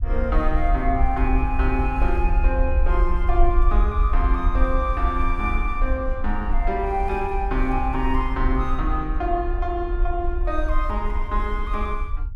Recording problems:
rumble; below 54 Hz, SNR -1 dB

